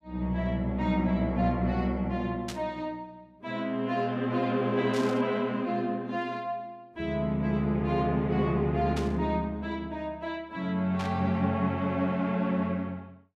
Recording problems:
burst of static; 4 times, first at 2.5 s; peak -5 dB vs average level

